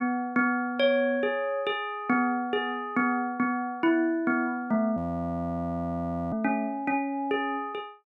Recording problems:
audio freezing; at 5 s for 1.5 s

